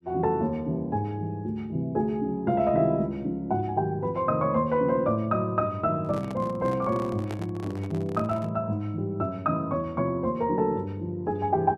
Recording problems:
microphone handling noise; from 6 to 8.5 s; peak -6 dB vs average level

